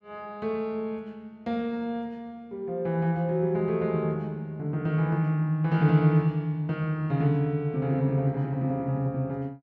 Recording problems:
none

